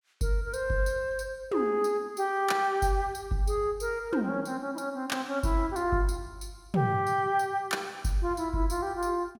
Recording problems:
none

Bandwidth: 17 kHz